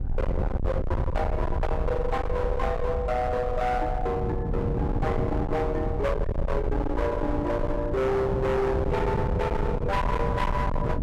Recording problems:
distortion; hard clipping, signal-to-distortion ratio 6 dB
rumble; below 170 Hz, SNR 5 dB
wind on the microphone; below 270 Hz, SNR 4 dB

